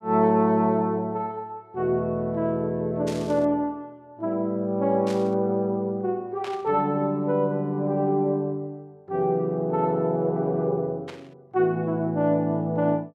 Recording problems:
static burst; 4 times, first at 3 s; peak -10 dB vs average level

